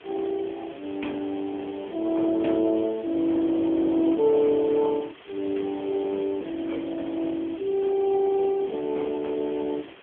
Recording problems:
telephone audio; 190 Hz to 3.4 kHz, AMR-NB
background hiss; SNR 22 dB

